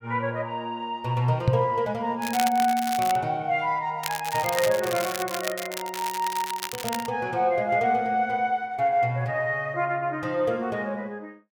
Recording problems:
microphone thump; at 1.5 s; peak +8 dB vs average level
crackle; at 2 s and from 4 to 7 s; loose cable, SNR 8 dB

